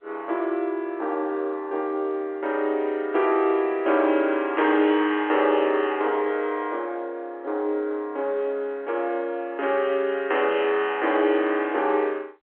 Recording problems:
phone line; 280 Hz to 3.6 kHz, G.711

